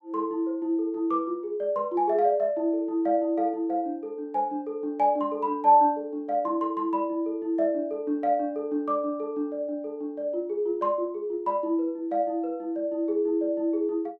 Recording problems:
none

